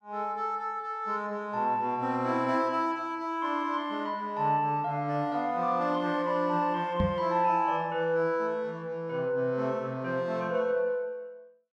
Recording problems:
knock on the microphone; at 7 s; peak +3 dB vs average level

